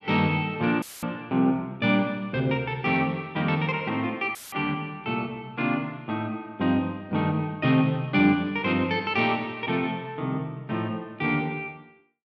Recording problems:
audio cutting out; at 1 s and at 4.5 s; filled with static

